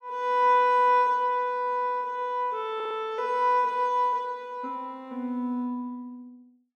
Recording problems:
stutter; at 3 s

